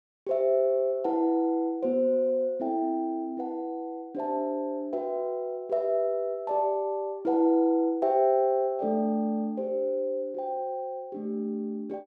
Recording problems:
none

